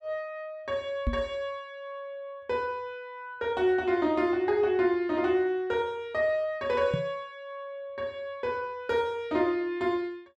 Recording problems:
microphone bump; at 1 s and at 7 s; peak +4 dB vs average level

